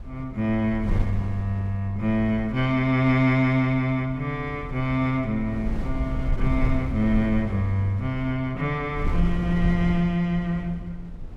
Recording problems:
wind noise; below 84 Hz, SNR 9 dB

